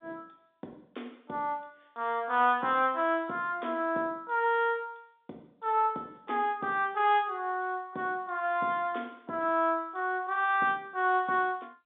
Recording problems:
phone line; 190 Hz to 3.7 kHz, G.711

